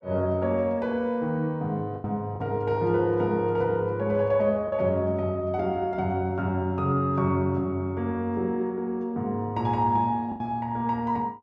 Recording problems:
lost packets; 2% of the sound replaced, filled with the last packet

